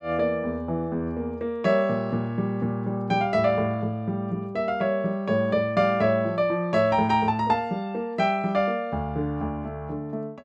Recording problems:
none

